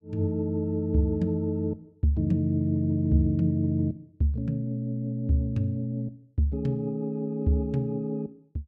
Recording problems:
none

